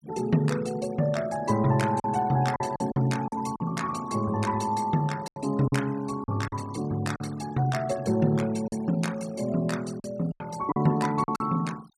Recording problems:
noise reduction artefacts; signal-to-artefact ratio 20 dB
packet loss; 6% of the sound replaced, filled with silence

